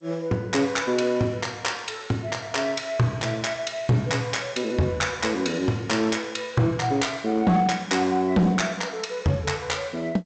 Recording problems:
lossy codec; G.722, log-spectral distance 4 dB, nothing above 7.6 kHz
distorted audio; hard clipping, signal-to-distortion ratio 11 dB

